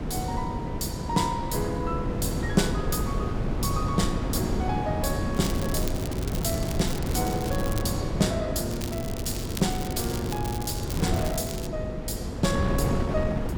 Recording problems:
hum; 50 Hz, harmonics up to 500 Hz, SNR 11 dB
wind noise; below 280 Hz, SNR 1 dB
crackle; from 5.5 to 8 s and from 8.5 to 12 s; loose cable, SNR 9 dB

